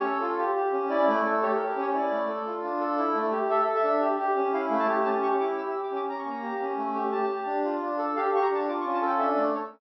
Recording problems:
treble missing; nothing above 5.7 kHz

